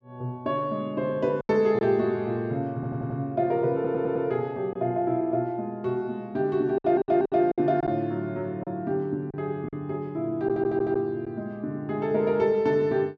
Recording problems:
lost packets; 3% of the sound replaced, filled with silence
audio stuttering; 4 times, first at 2.5 s

